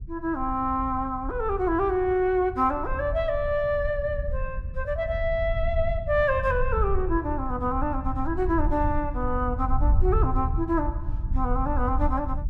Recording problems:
rumble; below 76 Hz, SNR 5 dB

